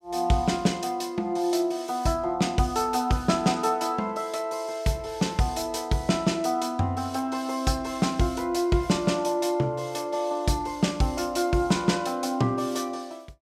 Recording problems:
none

